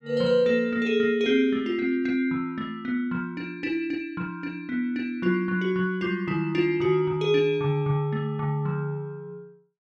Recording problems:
none

